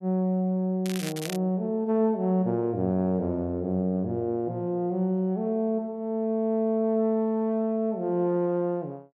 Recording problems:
crackle; at 1 s; loose cable, SNR 11 dB

